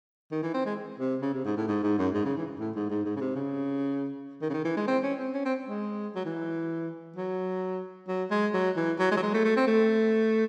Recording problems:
none

